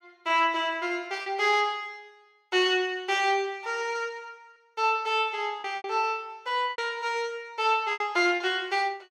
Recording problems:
lost packets; 5% of the sound replaced, filled with repeated pitch periods

